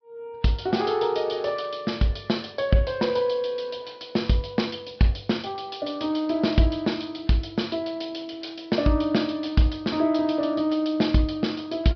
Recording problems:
treble cut off; nothing above 5.5 kHz
codec artefacts; Vorbis, log-spectral distance 4 dB

